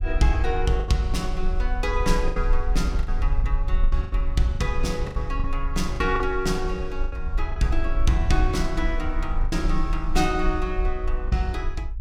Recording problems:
low-frequency rumble; below 48 Hz, strongest tone 24 Hz, SNR 2 dB
packet loss; 8% of the sound replaced, filled with the last packet

